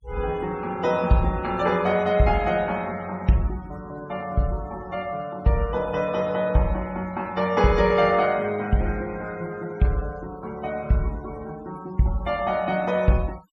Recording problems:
denoising artefacts; signal-to-artefact ratio 22 dB

